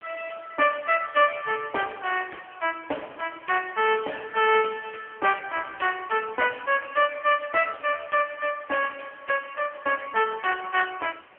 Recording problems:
phone line; 370 Hz to 2.9 kHz, AMR-NB
background hiss; SNR 27 dB

